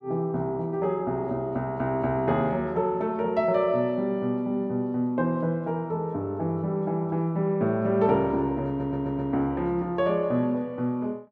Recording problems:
audio stuttering; at 8.5 s

